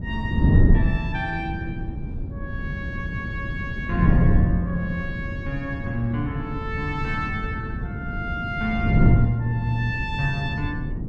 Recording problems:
wind noise; below 170 Hz, SNR -3 dB

